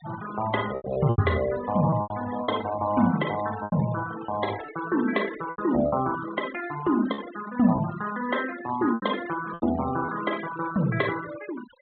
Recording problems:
treble cut off; nothing above 4 kHz
noise reduction artefacts; signal-to-artefact ratio 14 dB
lost packets; 7% of the sound replaced, filled with repeated pitch periods

